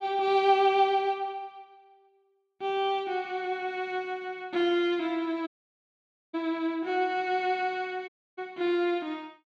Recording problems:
audio cutting out; at 5.5 s for 1 s and at 8 s

